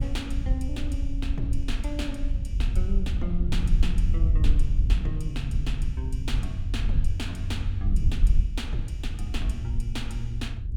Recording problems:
wind noise; below 62 Hz, SNR -6 dB

